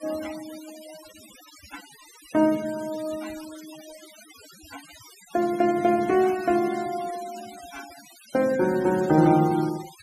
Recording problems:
noise reduction artefacts; signal-to-artefact ratio 20 dB

